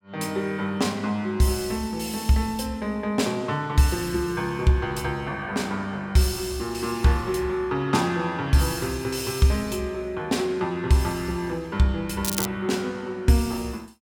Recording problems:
crackling; at 12 s; loose cable, SNR 4 dB

